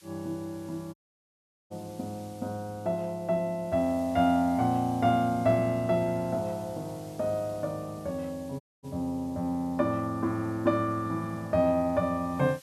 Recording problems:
background hiss; slope +2 dB per octave, SNR 25 dB
audio cutting out; at 1 s for 1 s and at 8.5 s

